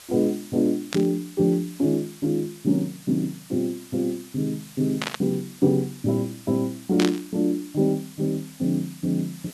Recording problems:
hiss; slope +1 dB per octave, SNR 20 dB
burst of static; at 1 s, at 5 s and at 7 s; peak +1 dB vs average level

